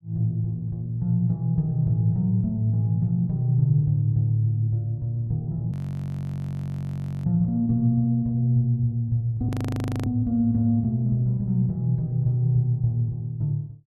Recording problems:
audio freezing; at 5.5 s for 1.5 s and at 9.5 s for 0.5 s

